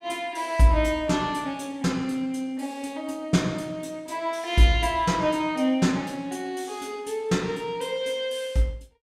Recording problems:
none

